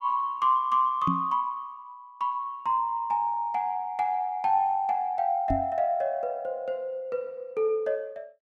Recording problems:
knock on the microphone; at 1 s and at 5.5 s; peak +2 dB vs average level

